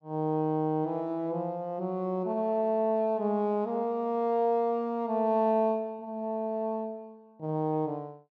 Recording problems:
none

